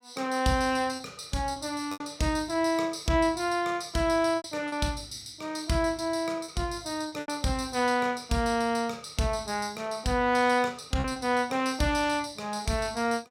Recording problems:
lost packets; 4% of the sound replaced, filled with repeated pitch periods

